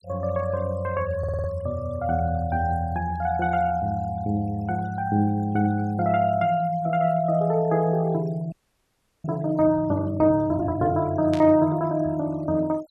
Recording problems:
denoising artefacts; signal-to-artefact ratio 25 dB
stutter; at 1 s
frozen audio; at 8.5 s for 0.5 s
static burst; at 11 s; peak -8 dB vs average level

